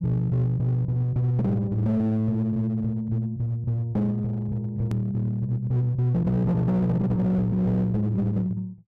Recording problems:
distortion; hard clipping, uneven, signal-to-distortion ratio 10 dB
click at an edit; at 5 s

